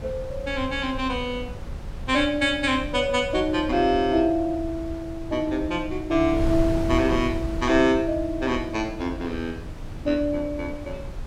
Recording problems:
wind noise; below 140 Hz, SNR 10 dB

